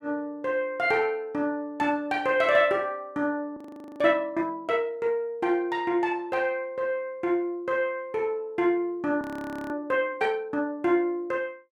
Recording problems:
frozen audio; at 3.5 s and at 9 s

